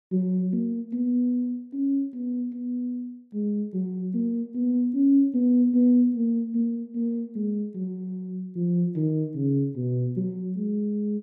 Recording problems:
none

